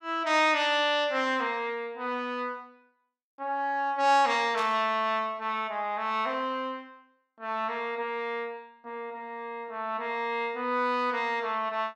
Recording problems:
static burst; at 4.5 s; peak -9 dB vs average level

